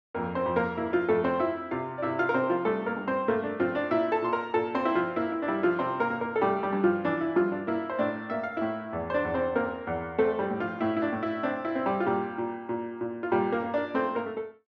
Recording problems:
none

